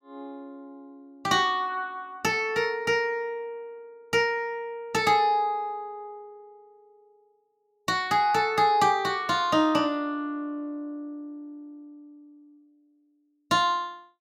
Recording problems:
none

